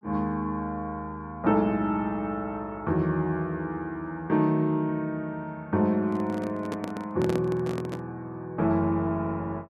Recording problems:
handling noise; from 6 to 8 s; peak 0 dB vs average level

